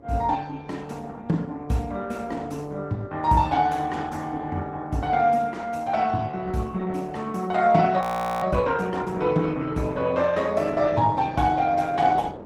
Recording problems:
lossy codec; Opus, log-spectral distance 3 dB, nothing above 17.7 kHz
wind noise; below 550 Hz, SNR 18 dB
frozen audio; at 8 s

